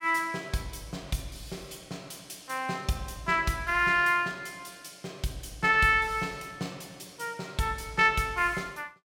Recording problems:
none

